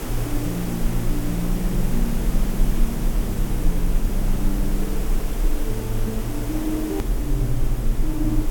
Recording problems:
hum; 60 Hz, harmonics up to 720 Hz, SNR 16 dB
background hiss; slope -6 dB per octave, SNR 4 dB
low-frequency rumble; below 38 Hz, strongest tone 20 Hz, SNR 0 dB
click at an edit; at 7 s

